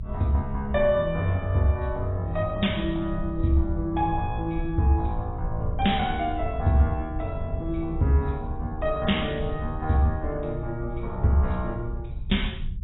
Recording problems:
codec artefacts; AAC, log-spectral distance 4 dB, nothing above 3.8 kHz
rumble; below 72 Hz, SNR 9 dB

